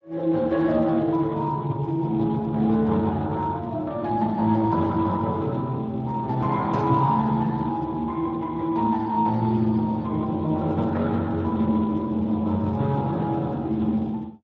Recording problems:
codec artefacts; Speex, log-spectral distance 2 dB

